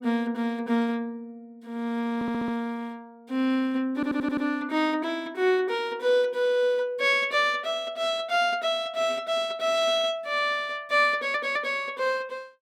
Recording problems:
audio stuttering; at 2 s, at 4 s and at 11 s

